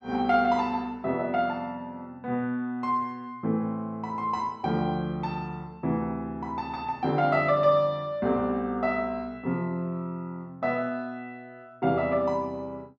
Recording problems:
none

